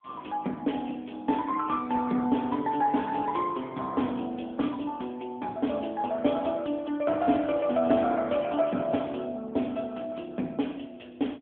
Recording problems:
telephone audio; 190 Hz to 3.5 kHz, AMR-NB

